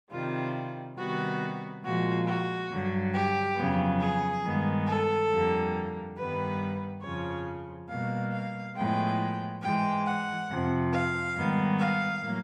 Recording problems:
none

